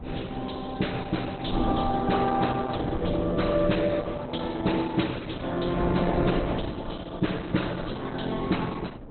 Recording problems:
codec artefacts; Opus, log-spectral distance 7 dB, nothing above 4.1 kHz
wind on the microphone; below 430 Hz, SNR 7 dB

